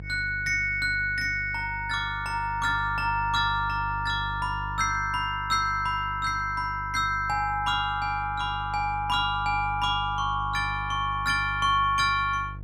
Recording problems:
hum; 50 Hz, harmonics up to 500 Hz, SNR 13 dB

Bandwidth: 16 kHz